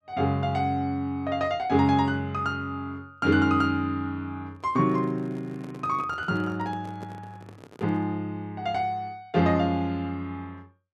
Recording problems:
microphone handling noise; from 4.5 to 8 s; peak -11 dB vs average level

